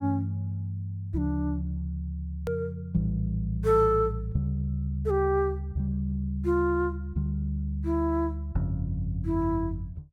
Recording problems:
click at an edit; at 2.5 s

